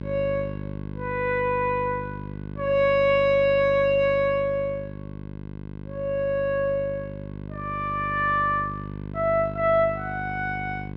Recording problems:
hum; 50 Hz, harmonics up to 1.1 kHz, SNR 12 dB

